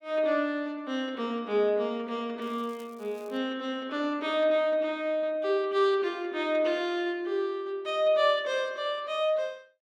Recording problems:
crackle; at 2.5 s; loose cable, SNR 30 dB

